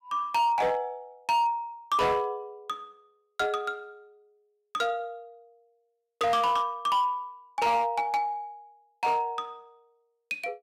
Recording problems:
distortion; hard clipping, signal-to-distortion ratio 12 dB

